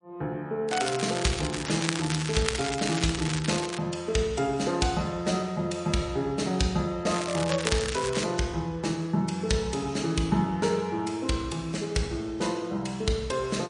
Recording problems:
codec artefacts; MP3, log-spectral distance 5 dB, nothing above 9.2 kHz
crackle; from 0.5 to 4 s and from 7 to 8 s; loose cable, SNR 5 dB

